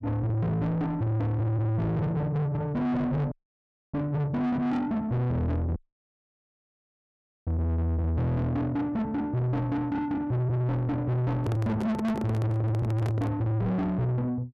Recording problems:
distorted audio; soft clipping, signal-to-distortion ratio 6 dB
dropout; at 3.5 s for 0.5 s and at 6 s for 1.5 s
microphone handling noise; from 11 to 13 s; peak 0 dB vs average level

